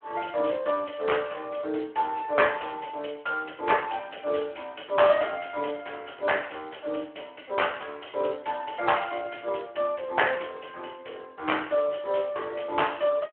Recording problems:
phone line; 280 Hz to 3.2 kHz, Speex

